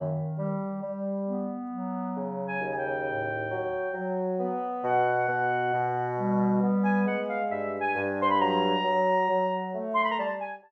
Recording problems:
none

